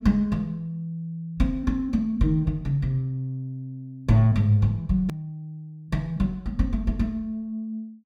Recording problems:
edit click; at 5 s

